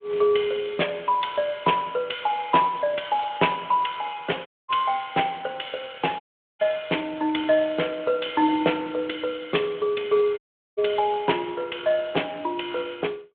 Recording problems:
telephone audio; 280 Hz to 3.4 kHz, Speex
dropout; at 4.5 s, at 6 s and at 10 s

